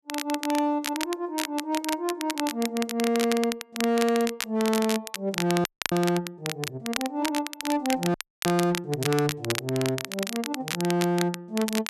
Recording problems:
distortion; hard clipping, signal-to-distortion ratio 10 dB
crackle; vinyl, SNR 6 dB
frozen audio; at 5.5 s and at 8 s

